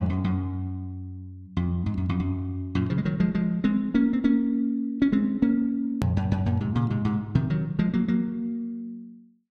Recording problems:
click at an edit; at 6 s

